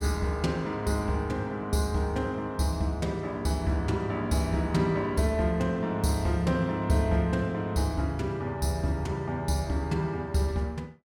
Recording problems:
none

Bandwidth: 17.5 kHz